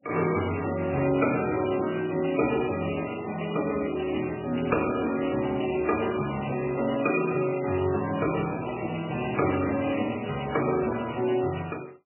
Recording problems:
codec artefacts; MP3, log-spectral distance 13 dB, nothing above 2.7 kHz

